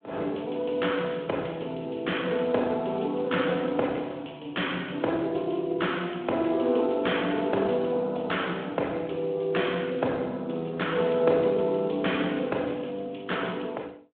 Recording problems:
phone line; 260 Hz to 3.4 kHz, Speex

